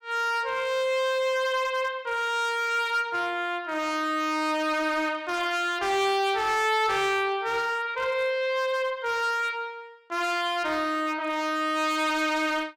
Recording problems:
distortion; hard clipping, uneven, signal-to-distortion ratio 11 dB

